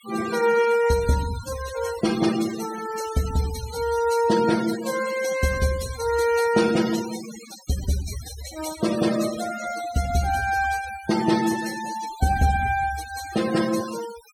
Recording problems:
denoising artefacts; signal-to-artefact ratio 12 dB

